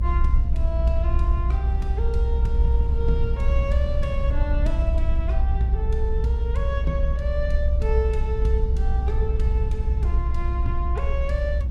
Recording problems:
rumble; below 62 Hz, SNR -8 dB
wind noise; below 430 Hz, SNR 18 dB

